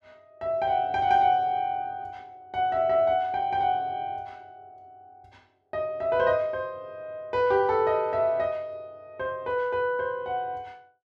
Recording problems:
none

